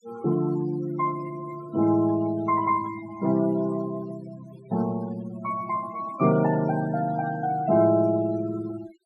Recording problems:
denoising artefacts; signal-to-artefact ratio 18 dB

